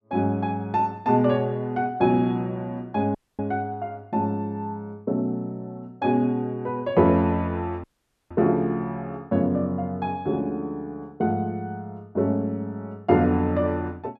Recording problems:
dropout; at 3 s and at 8 s

